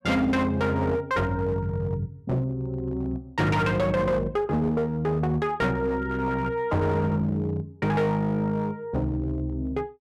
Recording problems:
distortion; hard clipping, uneven, signal-to-distortion ratio 10 dB

